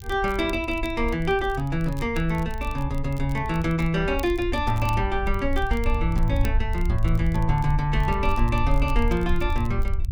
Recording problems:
low-frequency rumble; below 62 Hz, SNR 4 dB
crackle; vinyl, SNR 24 dB

